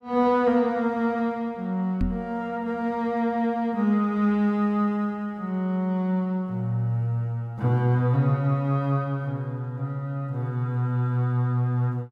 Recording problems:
knock on the microphone; at 2 s; peak +1 dB vs average level

